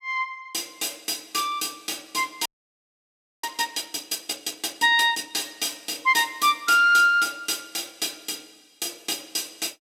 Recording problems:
audio freezing; at 2.5 s for 1 s

